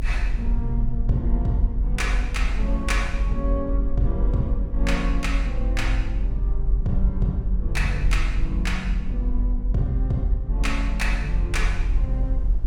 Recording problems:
rumble; below 48 Hz, strongest tone 44 Hz, SNR -3 dB
wind noise; below 280 Hz, SNR 20 dB

